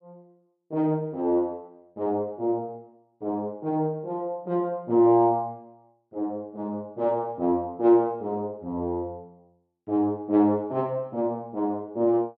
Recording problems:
none

